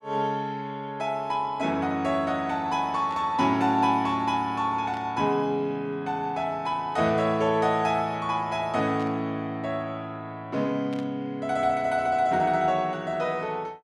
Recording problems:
static burst; 4 times, first at 3 s; peak -14 dB vs average level

